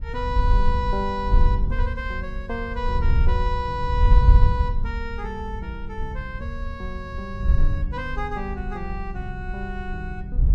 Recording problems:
wind noise; below 72 Hz, SNR -5 dB

